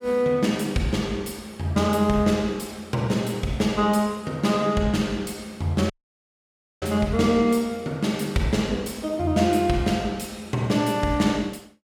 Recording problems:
dropout; at 6 s for 1 s

